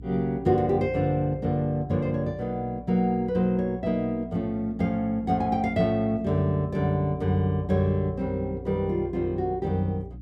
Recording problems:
electrical hum; 60 Hz, harmonics up to 300 Hz, SNR 17 dB

